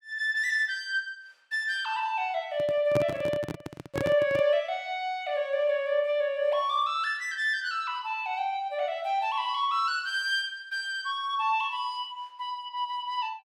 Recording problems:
handling noise; from 2.5 to 4.5 s; peak +2 dB vs average level

